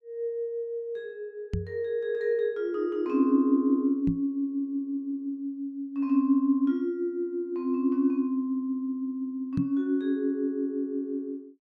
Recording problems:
microphone bump; at 1.5 s, at 4 s and at 9.5 s; peak +3 dB vs average level

